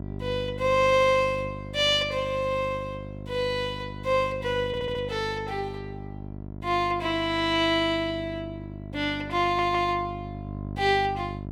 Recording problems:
electrical hum; 50 Hz, harmonics up to 750 Hz, SNR 12 dB
audio stuttering; at 4.5 s and at 9.5 s

